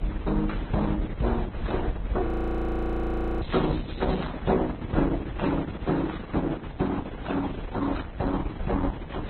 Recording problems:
lossy compression; Opus, then Vorbis, log-spectral distance 3 dB, nothing above 15.1 kHz
background hiss; SNR 10 dB
rumble; below 66 Hz, SNR 7 dB
audio freezing; at 2.5 s for 1 s
crackling; at 3.5 s; loose cable, SNR 16 dB

